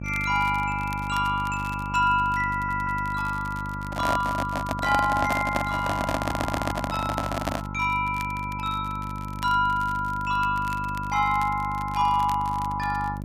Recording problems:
hum; 50 Hz, harmonics up to 900 Hz, SNR 9 dB
crackling; vinyl, SNR 21 dB
audio stuttering; at 2.5 s and at 6 s
handling noise; from 4 to 7.5 s; peak +2 dB vs average level

